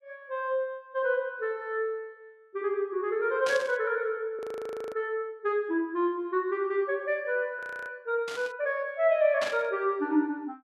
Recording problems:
burst of static; at 3.5 s, at 8.5 s and at 9.5 s; peak -1 dB vs average level
audio freezing; at 4.5 s for 0.5 s and at 7.5 s

